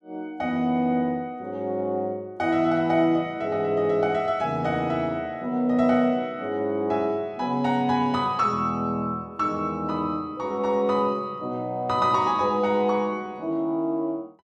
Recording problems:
none

